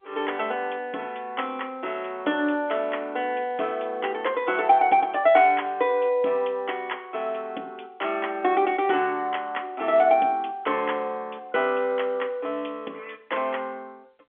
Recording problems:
telephone audio; 240 Hz to 3.4 kHz, G.711

